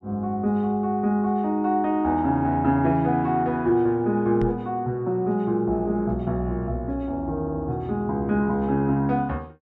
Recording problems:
microphone bump; at 4.5 s; peak -1 dB vs average level

